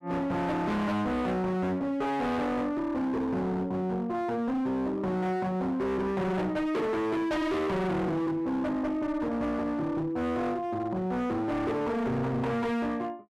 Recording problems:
distorted audio; hard clipping, signal-to-distortion ratio 7 dB

